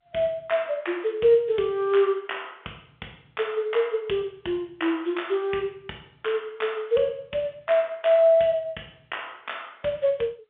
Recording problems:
phone line; 240 Hz to 3.5 kHz, G.711

